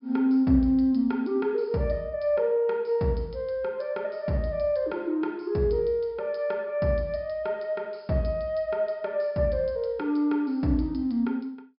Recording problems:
treble missing; nothing above 5.5 kHz

